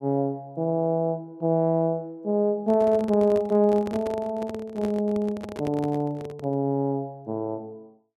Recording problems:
microphone handling noise; from 2.5 to 6.5 s; peak -6 dB vs average level

